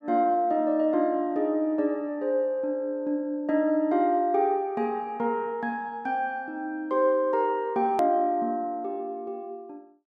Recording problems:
hard cut with a click; at 8 s

